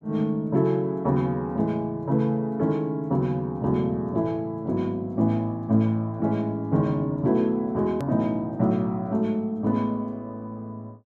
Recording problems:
hard cut with a click; at 8 s

